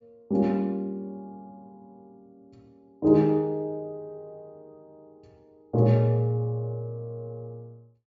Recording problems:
low-pass filter; nothing above 8 kHz

